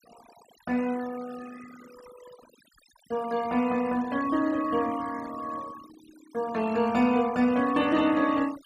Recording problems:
denoising artefacts; signal-to-artefact ratio 19 dB

